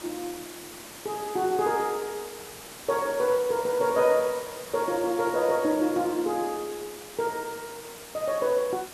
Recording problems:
background hiss; slope -2 dB per octave, SNR 14 dB

